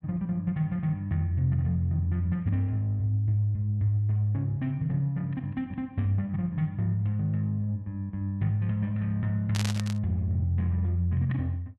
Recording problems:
static burst; at 9.5 s; peak -1 dB vs average level

